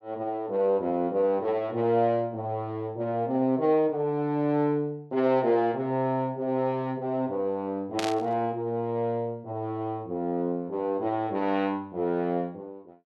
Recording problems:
burst of static; at 8 s; peak 0 dB vs average level

